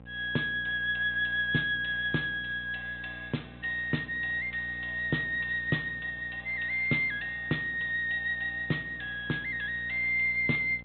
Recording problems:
low-pass filter; nothing above 3.9 kHz
hum; 60 Hz, harmonics up to 1.3 kHz, SNR 19 dB

